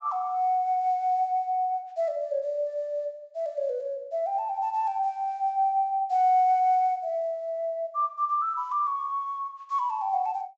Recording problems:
low-pass filter; nothing above 8 kHz

